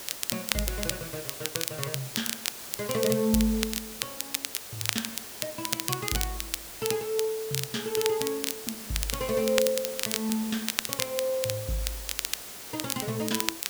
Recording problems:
hiss; slope -1 dB per octave, SNR 7 dB
crackling; vinyl, SNR 1 dB

